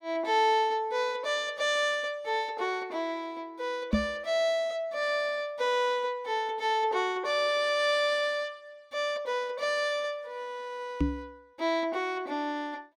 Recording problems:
knock on the microphone; at 4 s and at 11 s; peak +7 dB vs average level

